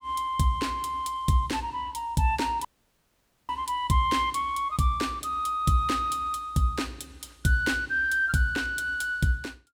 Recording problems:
audio cutting out; at 2.5 s for 1 s

